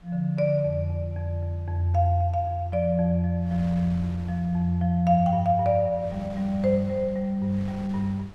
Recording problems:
wind on the microphone; below 430 Hz, SNR 22 dB

